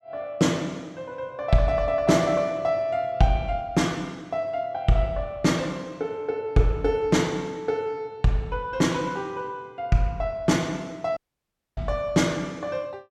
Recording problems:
dropout; at 11 s for 0.5 s

